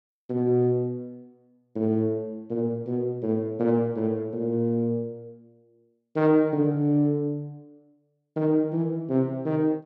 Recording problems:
none

